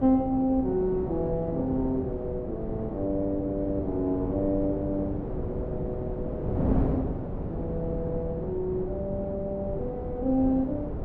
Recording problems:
wind on the microphone; below 390 Hz, SNR 4 dB

